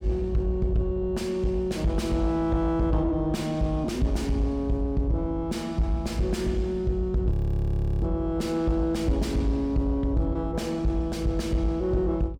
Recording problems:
distorted audio; soft clipping, signal-to-distortion ratio 11 dB
audio freezing; at 7.5 s for 0.5 s

